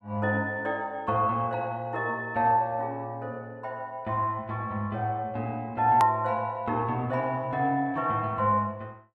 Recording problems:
hard cut with a click; at 6 s

